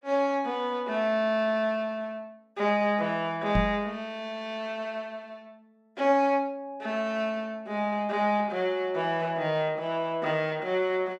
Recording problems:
microphone thump; at 3.5 s; peak +5 dB vs average level

